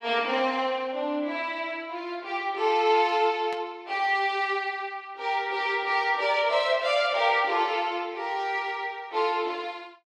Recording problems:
burst of static; at 3.5 s; peak -11 dB vs average level

